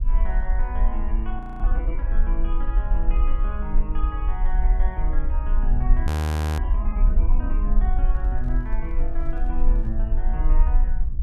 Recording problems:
electrical hum; 60 Hz, harmonics up to 1.4 kHz, SNR 26 dB
rumble; below 44 Hz, strongest tone 26 Hz, SNR -10 dB
audio freezing; at 1.5 s and at 6 s for 0.5 s
microphone handling noise; from 8 to 10 s; peak -10 dB vs average level

